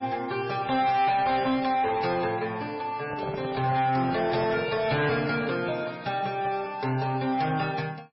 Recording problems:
codec artefacts; MP3, log-spectral distance 4 dB, nothing above 5.5 kHz
distorted audio; soft clipping, signal-to-distortion ratio 10 dB
microphone handling noise; from 3 to 5.5 s; peak -5 dB vs average level

